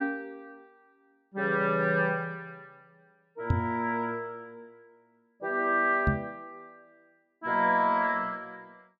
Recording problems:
microphone thump; at 3.5 s and at 6 s; peak +6 dB vs average level

